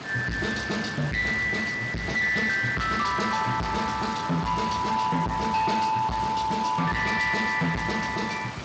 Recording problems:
codec artefacts; Speex, log-spectral distance 10 dB, nothing above 7.6 kHz
distorted audio; hard clipping, signal-to-distortion ratio 6 dB
background hiss; slope -4 dB per octave, SNR 11 dB

